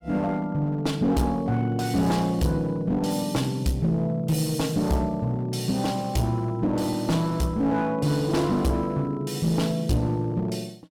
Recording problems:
distorted audio; hard clipping, uneven, signal-to-distortion ratio 9 dB

